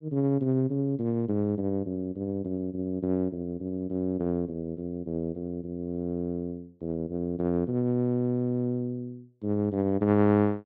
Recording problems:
none

